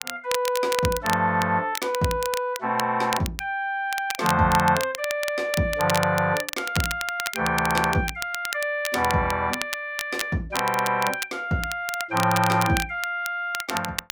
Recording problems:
crackling; vinyl, SNR 8 dB

